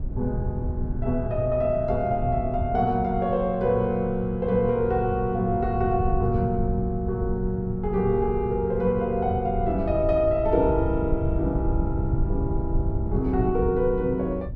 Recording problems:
wind on the microphone; below 120 Hz, SNR 6 dB

